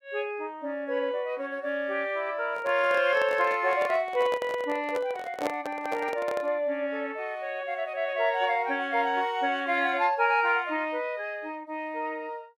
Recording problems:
microphone handling noise; from 2.5 to 6.5 s; peak +1 dB vs average level

